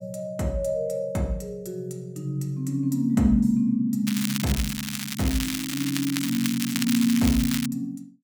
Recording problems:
crackling; from 4 to 7.5 s; loose cable, SNR 5 dB

